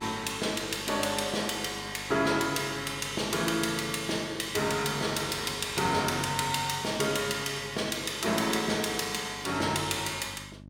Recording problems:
hum; 50 Hz, harmonics up to 650 Hz, SNR 20 dB

